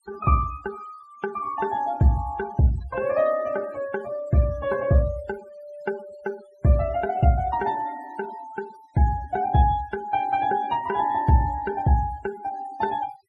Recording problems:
denoising artefacts; signal-to-artefact ratio 20 dB

